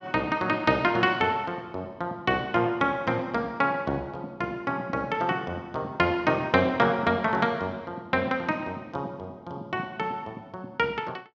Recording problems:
none

